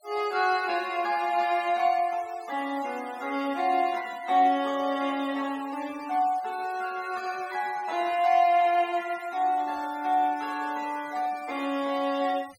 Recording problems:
noise reduction artefacts; signal-to-artefact ratio 20 dB

